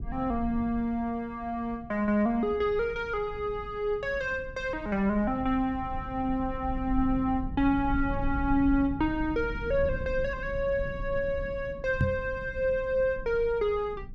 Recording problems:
low-frequency rumble; below 96 Hz, SNR 11 dB
microphone bump; at 12 s; peak +6 dB vs average level

